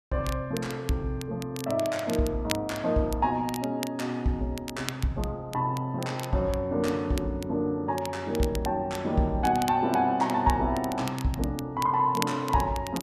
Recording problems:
crackle; vinyl, SNR 14 dB

